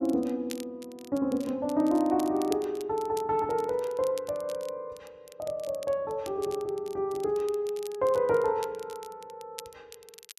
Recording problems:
crackling; vinyl, SNR 20 dB

